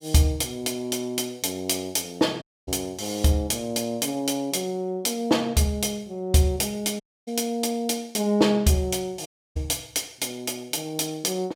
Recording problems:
audio cutting out; at 2.5 s, at 7 s and at 9.5 s

